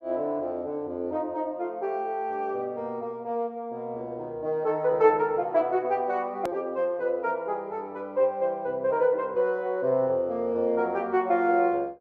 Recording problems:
edit click; at 6.5 s

